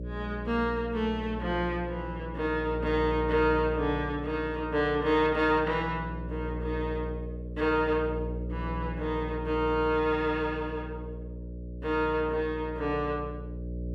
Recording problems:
electrical hum; 60 Hz, harmonics up to 600 Hz, SNR 8 dB

